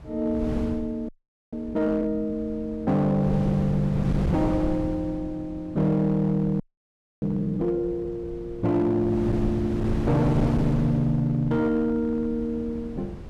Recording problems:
distortion; hard clipping, signal-to-distortion ratio 11 dB
wind on the microphone; below 240 Hz, SNR 8 dB
audio freezing; at 1 s and at 6.5 s for 0.5 s

